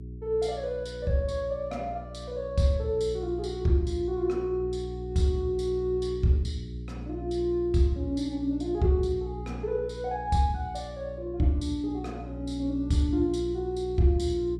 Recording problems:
mains hum; 60 Hz, harmonics up to 420 Hz, SNR 11 dB

